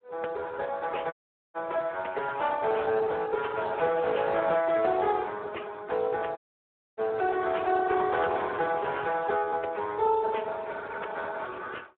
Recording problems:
telephone audio; 340 Hz to 3.4 kHz, Speex
audio cutting out; at 1 s and at 6.5 s for 0.5 s

